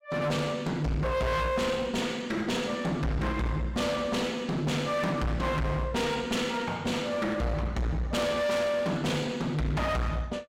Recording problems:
distorted audio; hard clipping, uneven, signal-to-distortion ratio 5 dB

